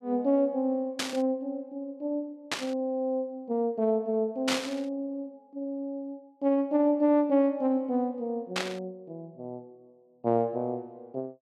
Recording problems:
static burst; 4 times, first at 1 s; peak +4 dB vs average level

